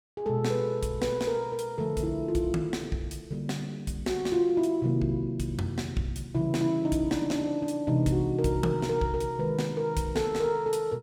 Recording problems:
none

